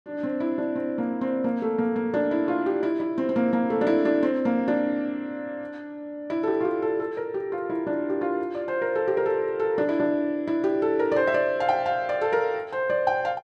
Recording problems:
none

